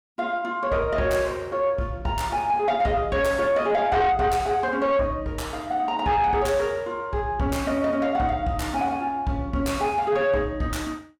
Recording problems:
distorted audio; soft clipping, signal-to-distortion ratio 10 dB

